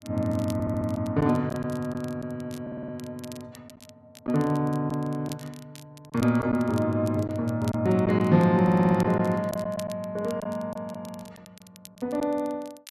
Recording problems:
crackle; vinyl, SNR 23 dB
packet loss; 3% of the sound replaced, filled with silence
stutter; at 0.5 s, at 2.5 s and at 8.5 s

